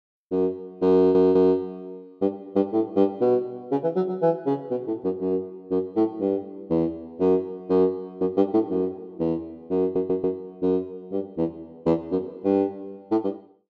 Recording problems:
stutter; at 1 s and at 10 s

